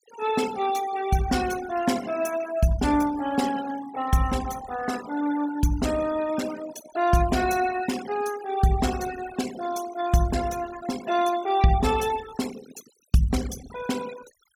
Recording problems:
noise reduction artefacts; signal-to-artefact ratio 14 dB

